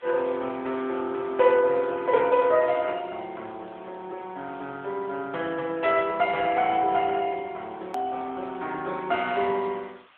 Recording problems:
phone line; 280 Hz to 3.5 kHz, AMR-NB
hiss; SNR 29 dB
click at an edit; at 8 s

